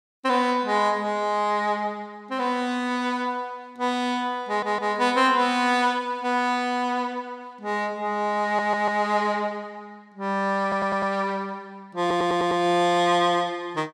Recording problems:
stutter; 4 times, first at 4.5 s

